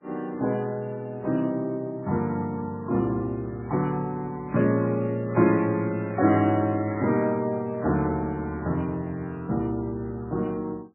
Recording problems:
codec artefacts; Vorbis, then MP3, log-spectral distance 2 dB, nothing above 2.4 kHz

